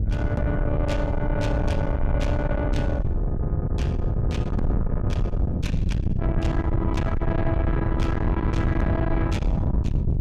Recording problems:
distorted audio; soft clipping, signal-to-distortion ratio 8 dB
wind noise; below 150 Hz, SNR -3 dB

